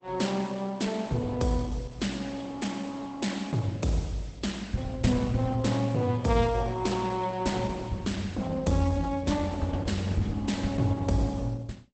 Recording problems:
lossy codec; Opus, log-spectral distance 4 dB, nothing above 8.2 kHz

